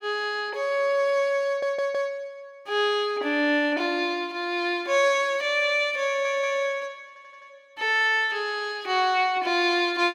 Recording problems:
audio stuttering; at 1.5 s, at 6 s and at 7 s

